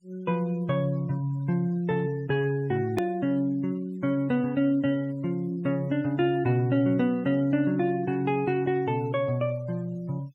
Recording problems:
denoising artefacts; signal-to-artefact ratio 28 dB
edit click; at 3 s

